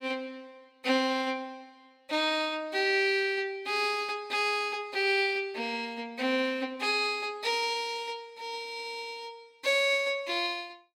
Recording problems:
none

